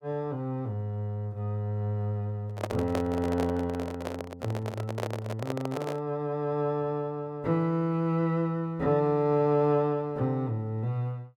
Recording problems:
microphone handling noise; from 2.5 to 6 s; peak +2 dB vs average level

